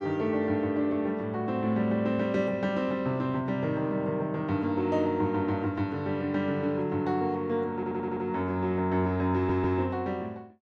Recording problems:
audio stuttering; at 7.5 s and at 9.5 s

